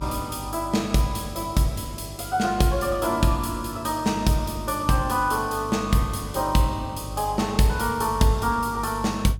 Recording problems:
hum; 50 Hz, harmonics up to 350 Hz, SNR 15 dB

